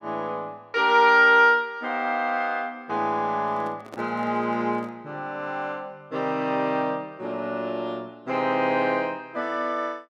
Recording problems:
handling noise; from 3.5 to 5 s; peak -11 dB vs average level

